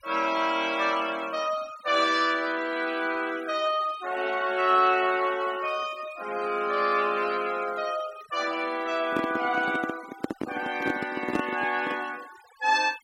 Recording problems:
denoising artefacts; signal-to-artefact ratio 18 dB
microphone handling noise; from 9 to 12 s; peak +3 dB vs average level

